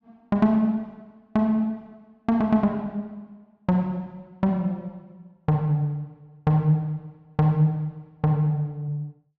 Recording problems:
none

